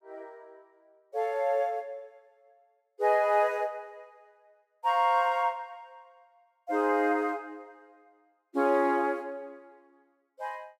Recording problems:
none

